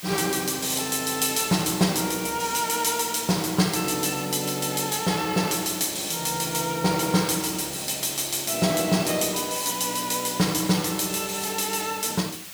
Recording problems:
background hiss; slope +2 dB per octave, SNR 13 dB

